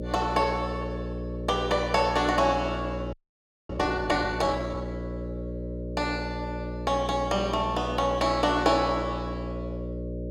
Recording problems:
hum; 60 Hz, harmonics up to 600 Hz, SNR 7 dB
frozen audio; at 3 s for 0.5 s

